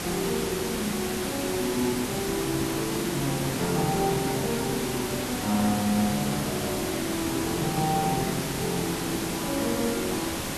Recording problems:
hiss; slope -3 dB per octave, SNR 2 dB

